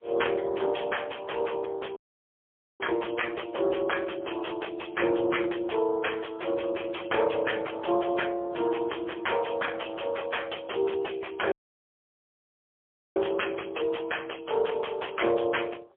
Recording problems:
phone line; 300 Hz to 3.4 kHz, AMR-NB, then MP3
distorted audio; soft clipping, signal-to-distortion ratio 6 dB
dropout; at 2 s for 1 s and at 12 s for 1.5 s

